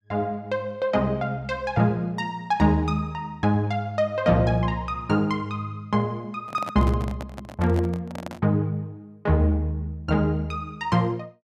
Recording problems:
handling noise; from 6.5 to 8.5 s; peak -6 dB vs average level

